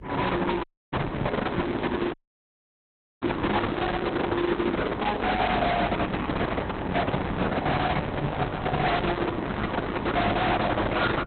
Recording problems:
lossy codec; Opus, log-spectral distance 5 dB, nothing above 4 kHz
distorted audio; soft clipping, signal-to-distortion ratio 6 dB
electrical hum; 50 Hz, harmonics up to 450 Hz, SNR 17 dB
dropout; at 0.5 s and at 2 s for 1 s

